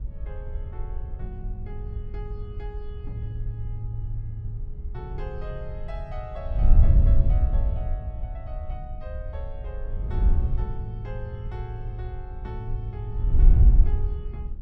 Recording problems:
wind noise; below 62 Hz, SNR -11 dB

